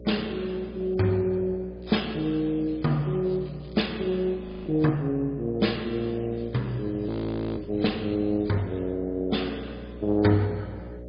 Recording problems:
codec artefacts; MP3, then MP2, log-spectral distance 4 dB, nothing above 4.9 kHz
electrical hum; 60 Hz, harmonics up to 600 Hz, SNR 15 dB
crackle; from 2 to 4.5 s and from 6 to 9 s; loose cable, SNR 28 dB
audio freezing; at 4.5 s and at 7 s

